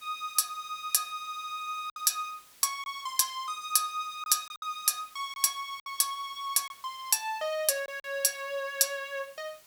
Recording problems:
background hiss; slope +1 dB per octave, SNR 24 dB
packet loss; 4% of the sound replaced, filled with silence

